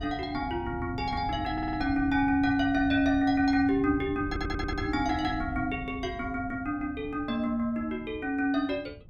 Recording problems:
wind on the microphone; below 150 Hz, SNR 12 dB
stutter; at 1.5 s and at 4.5 s

